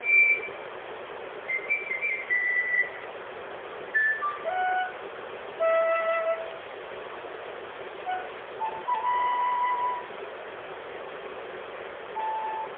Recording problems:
telephone audio; 340 Hz to 3.3 kHz, AMR-NB, then MP3
hiss; SNR 12 dB
crackle; from 6 to 10 s; loose cable, SNR 27 dB

